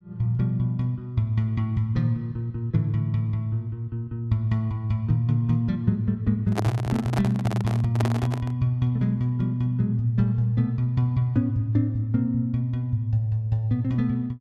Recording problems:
microphone handling noise; from 6.5 to 8.5 s; peak +2 dB vs average level

